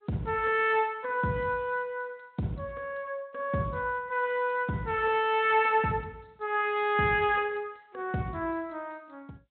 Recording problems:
treble cut off; nothing above 4 kHz
lossy compression; Speex, then G.722, log-spectral distance 4 dB

